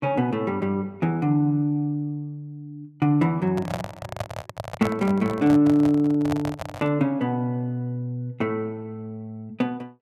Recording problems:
microphone handling noise; from 3.5 to 7 s; peak -1 dB vs average level

